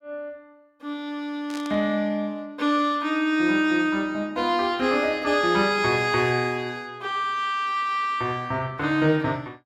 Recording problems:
static burst; at 1.5 s; peak -12 dB vs average level

